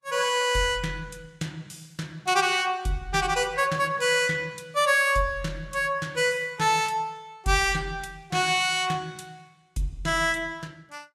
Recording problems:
lossy codec; Vorbis, log-spectral distance 3 dB, nothing above 12.3 kHz

